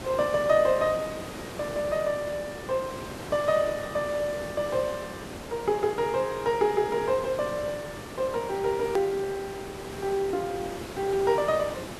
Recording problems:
background hiss; slope -6 dB per octave, SNR 11 dB
edit click; at 9 s

